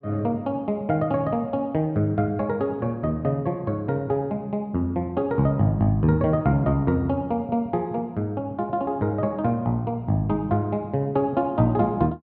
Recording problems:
none

